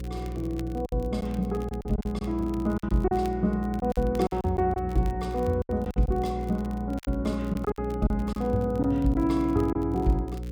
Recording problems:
electrical hum; 60 Hz, harmonics up to 540 Hz, SNR 8 dB
crackling; vinyl, SNR 26 dB
lost packets; 9% of the sound replaced, filled with silence

